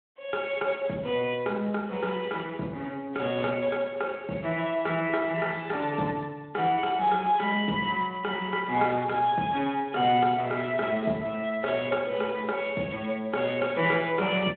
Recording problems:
telephone audio; 190 Hz to 3.4 kHz, Speex

